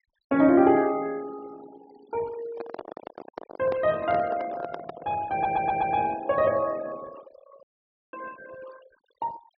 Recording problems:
treble missing; nothing above 5.5 kHz
noise reduction artefacts; signal-to-artefact ratio 21 dB
microphone handling noise; from 2.5 to 5 s; peak -6 dB vs average level
audio stuttering; at 5.5 s
audio cutting out; at 7.5 s for 0.5 s

